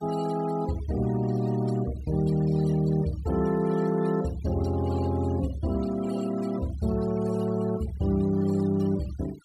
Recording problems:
noise reduction artefacts; signal-to-artefact ratio 19 dB

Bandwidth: 14.5 kHz